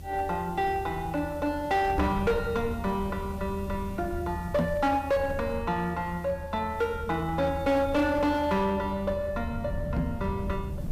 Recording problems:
distortion; hard clipping, uneven, signal-to-distortion ratio 12 dB
hiss; slope +3 dB per octave, SNR 26 dB
rumble; below 140 Hz, SNR 9 dB
knock on the microphone; at 2 s, at 4.5 s and at 10 s; peak +5 dB vs average level

